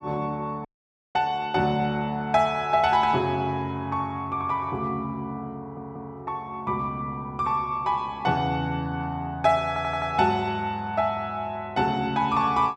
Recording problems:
audio cutting out; at 0.5 s
stutter; at 5.5 s and at 9.5 s

